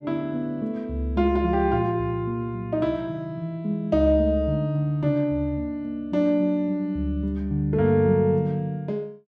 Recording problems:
none

